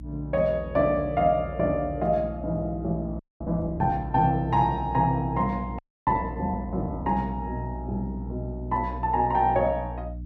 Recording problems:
hum; 60 Hz, harmonics up to 300 Hz, SNR 11 dB
frozen audio; at 3 s and at 6 s

